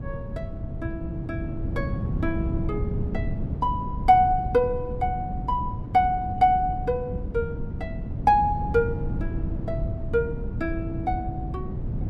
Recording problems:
wind noise; below 170 Hz, SNR 6 dB

